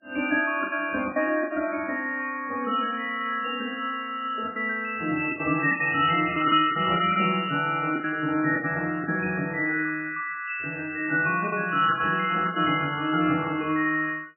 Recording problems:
lossy codec; MP3, log-spectral distance 3 dB, nothing above 2.4 kHz
packet loss; 8% of the sound replaced, filled with the last packet

